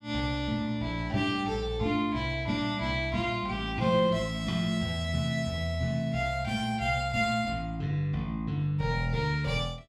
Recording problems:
none

